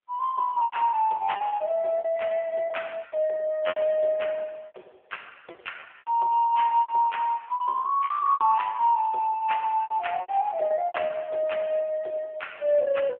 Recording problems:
telephone audio; 320 Hz to 3.5 kHz, AMR-NB
lost packets; 11% of the sound replaced, filled with repeated pitch periods

